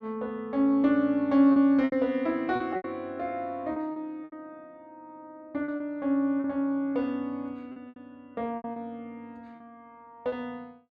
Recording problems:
packet loss; 8% of the sound replaced, filled with repeated pitch periods

